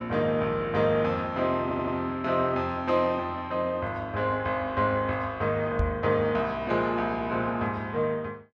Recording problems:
audio stuttering; at 1.5 s
microphone thump; at 6 s; peak +3 dB vs average level

